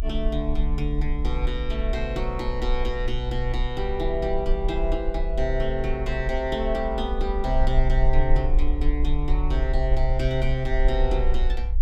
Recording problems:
low-frequency rumble; below 50 Hz, strongest tone 22 Hz, SNR 0 dB

